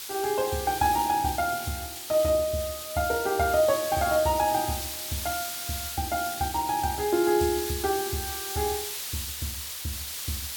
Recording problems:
background hiss; slope +3 dB per octave, SNR 6 dB

